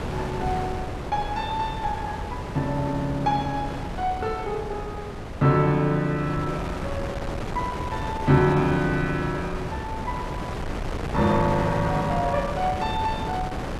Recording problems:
wind on the microphone; below 750 Hz, SNR 6 dB

